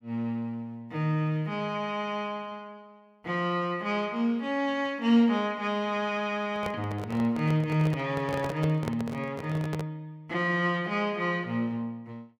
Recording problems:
handling noise; from 6.5 to 10 s; peak -2 dB vs average level

